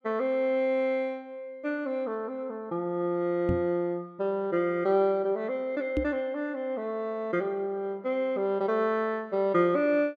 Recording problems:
microphone bump; at 3.5 s and at 6 s; peak +3 dB vs average level

